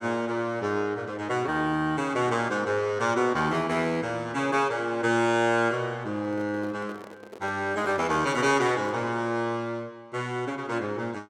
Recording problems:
handling noise; from 6 to 9 s; peak -8 dB vs average level

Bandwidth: 17 kHz